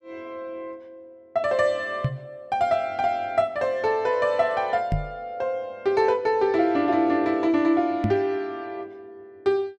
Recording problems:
knock on the microphone; at 2 s, at 5 s and at 8 s; peak +3 dB vs average level

